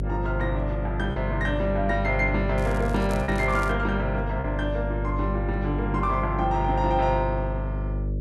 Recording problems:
electrical hum; 50 Hz, harmonics up to 600 Hz, SNR 3 dB
lost packets; 1.5% of the sound replaced, filled with repeated pitch periods
crackle; from 2.5 to 3.5 s; loose cable, SNR 20 dB

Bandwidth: 12 kHz